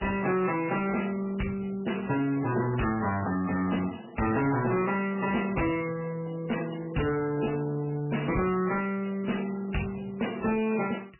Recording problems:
lossy compression; AAC, then MP3, log-spectral distance 7 dB, nothing above 2.9 kHz
distorted audio; soft clipping, signal-to-distortion ratio 11 dB

